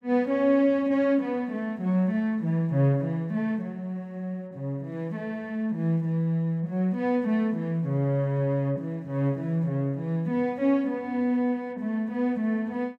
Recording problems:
none

